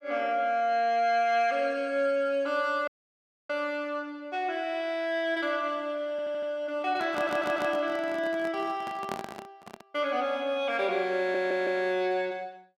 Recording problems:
dropout; at 3 s for 0.5 s
audio stuttering; at 6 s, at 7 s and at 11 s
handling noise; from 7 to 10 s; peak -3 dB vs average level

